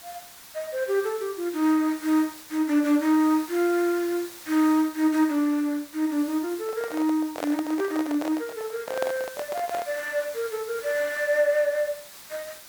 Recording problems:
hiss; slope 0 dB per octave, SNR 17 dB
handling noise; from 6.5 to 10 s; peak -1 dB vs average level

